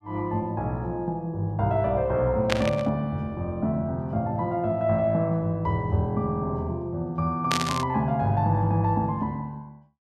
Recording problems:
burst of static; at 2.5 s and at 7.5 s; peak +5 dB vs average level

